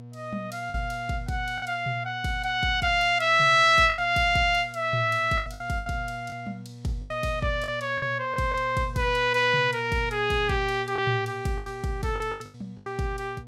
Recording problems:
hum; 60 Hz, harmonics up to 720 Hz, SNR 18 dB
lost packets; 7% of the sound replaced, filled with the last packet

